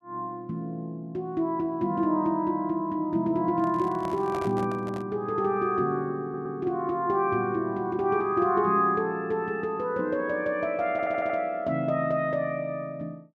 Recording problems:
handling noise; from 3.5 to 5 s; peak -6 dB vs average level
audio stuttering; at 6 s and at 11 s

